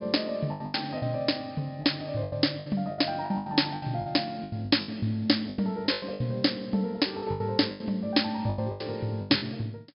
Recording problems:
treble cut off; nothing above 5.5 kHz
packet loss; 16% of the sound replaced, filled with the last packet

